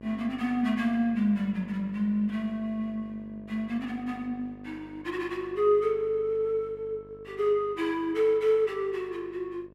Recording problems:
hum; 50 Hz, harmonics up to 1.2 kHz, SNR 21 dB

